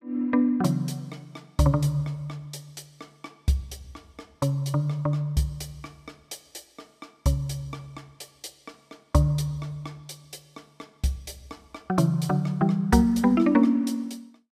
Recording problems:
none

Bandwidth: 15.5 kHz